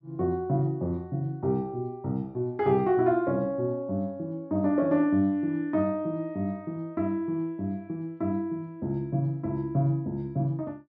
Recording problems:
treble missing; nothing above 8 kHz

